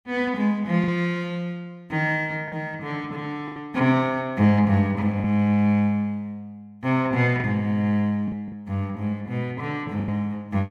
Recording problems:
packet loss; 4% of the sound replaced, filled with the last packet

